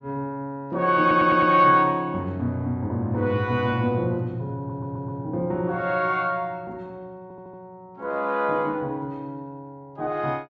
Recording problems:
stutter; at 1 s, at 4.5 s and at 7 s

